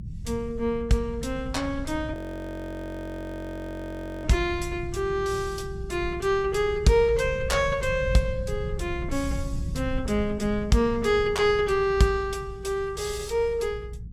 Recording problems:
rumble; below 130 Hz, SNR 10 dB
frozen audio; at 2 s for 2 s

